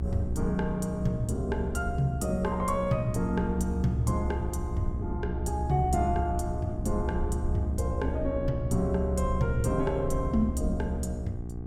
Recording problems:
hum; 60 Hz, harmonics up to 780 Hz, SNR 8 dB
rumble; below 72 Hz, strongest tone 70 Hz, SNR 4 dB

